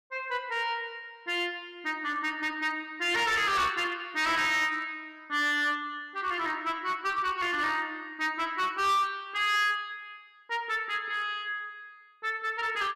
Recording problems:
distortion; hard clipping, uneven, signal-to-distortion ratio 11 dB

